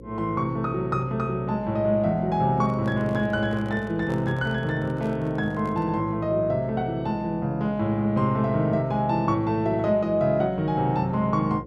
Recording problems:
hum; 60 Hz, harmonics up to 540 Hz, SNR 17 dB
microphone handling noise; from 2.5 to 6 s; peak -10 dB vs average level

